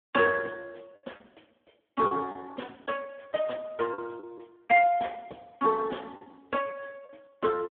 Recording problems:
phone line; 190 Hz to 2.2 kHz, Speex
packet loss; 5% of the sound replaced, filled with the last packet

